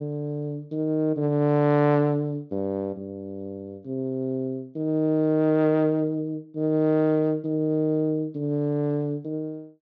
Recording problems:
low-pass filter; nothing above 8 kHz

